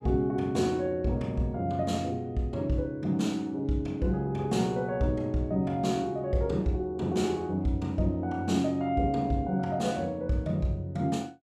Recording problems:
none

